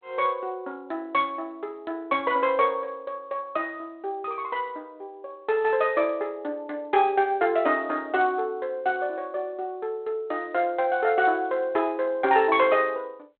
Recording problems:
phone line; 320 Hz to 3.7 kHz, G.726

